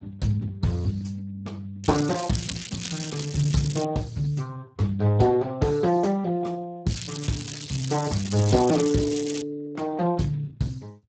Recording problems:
codec artefacts; Speex, log-spectral distance 7 dB, nothing above 17.1 kHz
crackling; from 2 to 4 s and from 7 to 9.5 s; loose cable, SNR 9 dB

